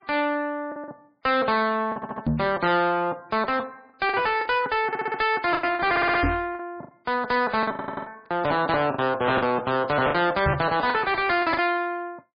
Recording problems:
lossy compression; MP3, log-spectral distance 3 dB, nothing above 4.2 kHz
distorted audio; soft clipping, signal-to-distortion ratio 7 dB
lost packets; 7% of the sound replaced, filled with the last packet
audio stuttering; 4 times, first at 2 s
knock on the microphone; at 2.5 s, at 6 s and at 10 s; peak +3 dB vs average level

